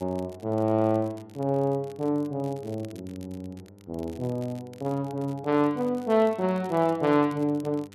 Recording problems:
hum; 50 Hz, harmonics up to 1 kHz, SNR 25 dB
crackle; vinyl, SNR 28 dB

